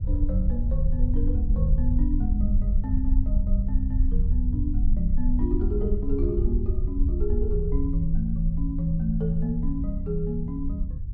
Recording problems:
rumble; below 64 Hz, SNR -3 dB

